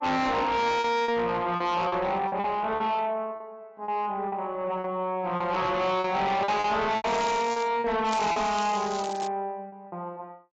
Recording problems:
lossy codec; AAC, log-spectral distance 3 dB
distortion; soft clipping, signal-to-distortion ratio 6 dB
packet loss; 9% of the sound replaced, filled with repeated pitch periods
crackling; at 7 s and from 8 to 9.5 s; loose cable, SNR 14 dB

